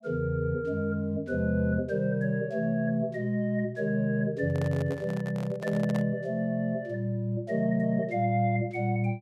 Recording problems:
handling noise; from 4.5 to 6 s; peak -5 dB vs average level

